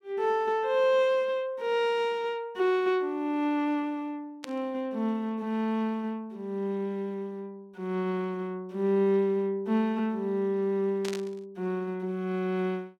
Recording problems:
static burst; at 4.5 s and at 11 s; peak -5 dB vs average level

